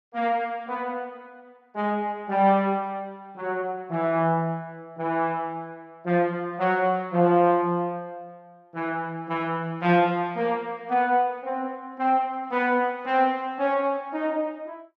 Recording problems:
none

